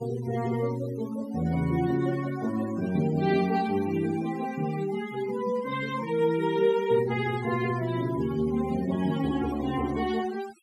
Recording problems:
noise reduction artefacts; signal-to-artefact ratio 18 dB

